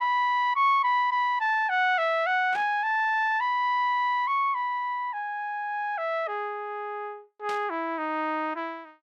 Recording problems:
burst of static; at 2.5 s and at 7.5 s; peak -10 dB vs average level

